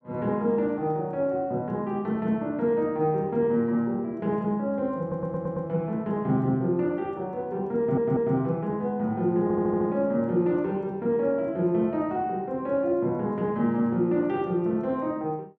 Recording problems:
audio stuttering; at 5 s, at 8 s and at 9.5 s

